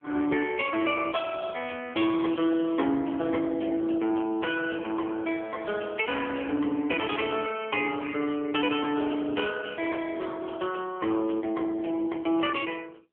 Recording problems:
phone line; 240 Hz to 3.3 kHz, AMR-NB

